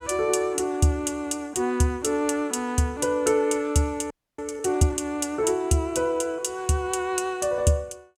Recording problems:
audio freezing; at 4 s

